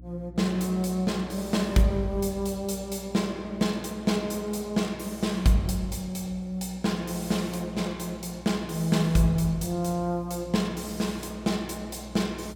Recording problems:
hum; 60 Hz, harmonics up to 360 Hz, SNR 19 dB

